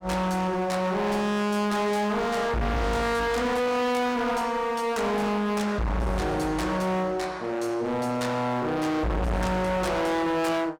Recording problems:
distortion; hard clipping, signal-to-distortion ratio 6 dB

